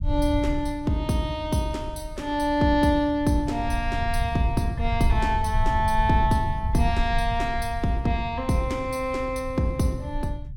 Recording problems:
rumble; below 82 Hz, SNR 7 dB

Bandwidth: 17 kHz